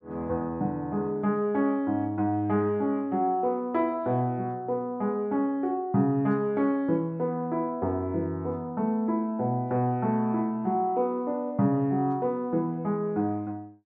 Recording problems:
none

